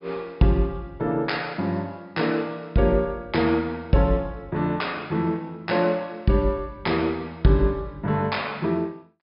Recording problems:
low-pass filter; nothing above 5.5 kHz

